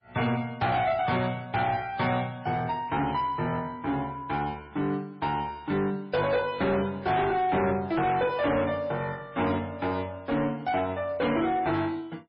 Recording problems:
codec artefacts; MP3, log-spectral distance 2 dB, nothing above 4.9 kHz
distortion; soft clipping, signal-to-distortion ratio 10 dB

